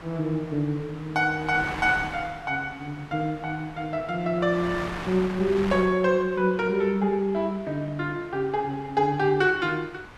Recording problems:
wind on the microphone; below 1.9 kHz, SNR 14 dB

